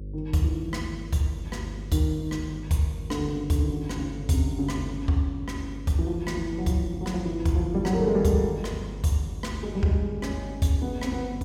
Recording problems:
hum; 50 Hz, harmonics up to 550 Hz, SNR 11 dB

